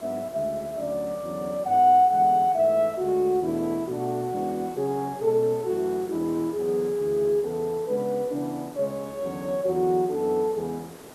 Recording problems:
hiss; SNR 20 dB

